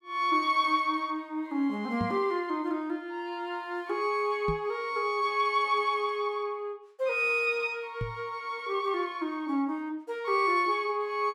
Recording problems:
microphone bump; at 2 s, at 4.5 s and at 8 s; peak -1 dB vs average level

